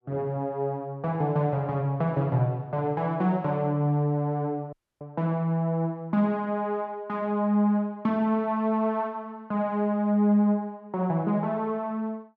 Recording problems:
audio cutting out; at 4.5 s

